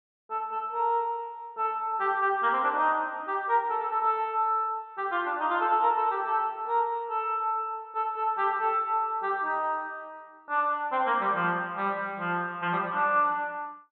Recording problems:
treble missing; nothing above 4.1 kHz

